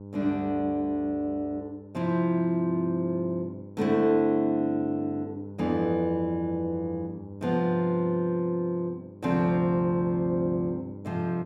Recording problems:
electrical hum; 50 Hz, harmonics up to 1 kHz, SNR 16 dB

